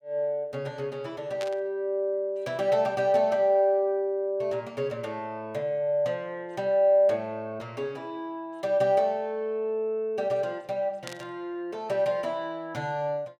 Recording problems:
burst of static; at 1.5 s and at 11 s; peak -6 dB vs average level

